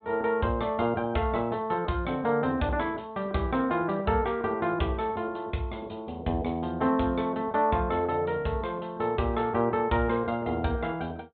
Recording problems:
low-pass filter; nothing above 4 kHz

